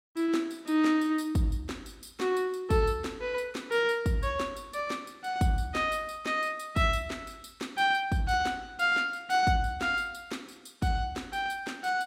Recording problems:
none

